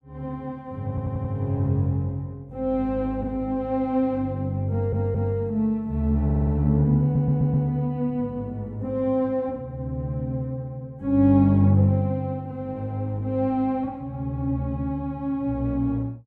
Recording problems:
stutter; 4 times, first at 1 s

